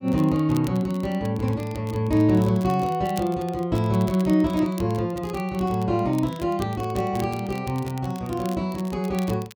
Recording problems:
crackle; vinyl, SNR 21 dB

